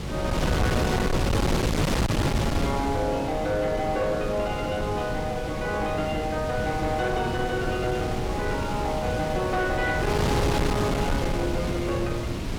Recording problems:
distorted audio; soft clipping, signal-to-distortion ratio 8 dB
wind on the microphone; below 530 Hz, SNR 1 dB

